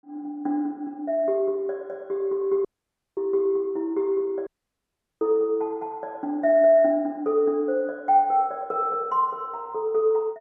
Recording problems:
audio cutting out; at 2.5 s for 0.5 s and at 4.5 s for 0.5 s

